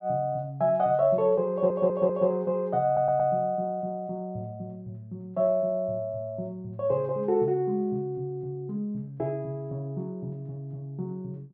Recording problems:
stutter; at 1.5 s and at 3 s

